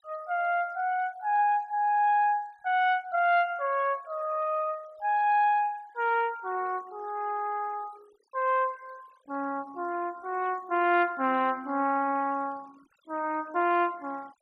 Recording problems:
denoising artefacts; signal-to-artefact ratio 25 dB

